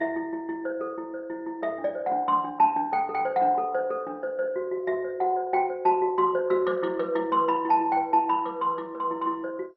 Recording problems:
lossy codec; MP2, log-spectral distance 2 dB, nothing above 4.9 kHz

